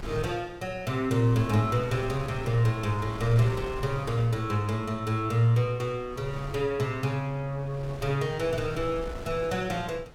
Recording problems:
wind noise; below 400 Hz, SNR 15 dB

